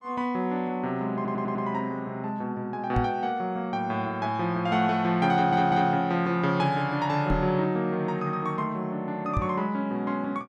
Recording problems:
audio stuttering; at 1 s and at 5.5 s
microphone thump; at 3 s, at 7.5 s and at 9.5 s; peak +3 dB vs average level

